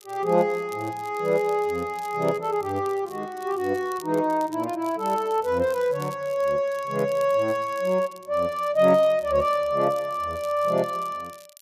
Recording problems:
crackling; vinyl, SNR 24 dB

